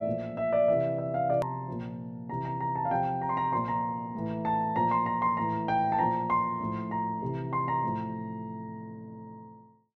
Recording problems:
hard cut with a click; at 1.5 s

